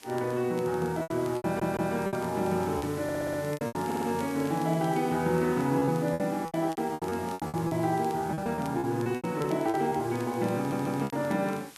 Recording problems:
hiss; slope 0 dB per octave, SNR 18 dB
crackle; vinyl, SNR 25 dB
packet loss; 13% of the sound replaced, filled with repeated pitch periods
audio stuttering; 4 times, first at 1.5 s

